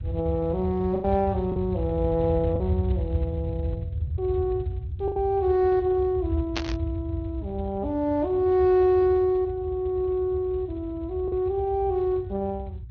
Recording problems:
lossy codec; MP2, then Speex, log-spectral distance 2 dB
rumble; below 100 Hz, SNR 7 dB
packet loss; 2% of the sound replaced, filled with the last packet
static burst; at 6.5 s; peak +1 dB vs average level

